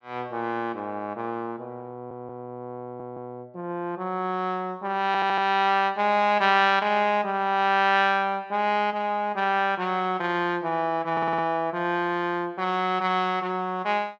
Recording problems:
audio stuttering; 4 times, first at 2 s

